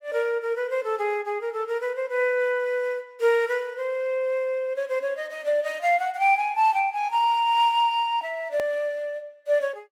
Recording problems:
edit click; at 8.5 s

